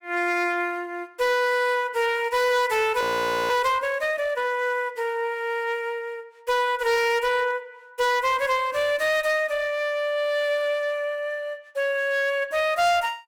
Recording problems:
distorted audio; hard clipping, uneven, signal-to-distortion ratio 11 dB
audio freezing; at 3 s

